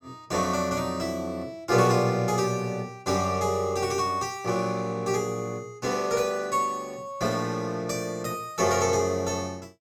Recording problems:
none

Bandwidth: 17 kHz